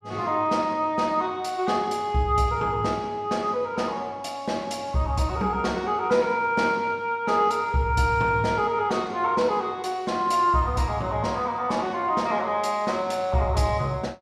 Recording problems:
none

